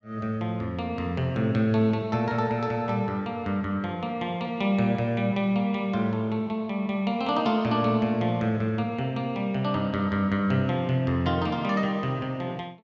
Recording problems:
none

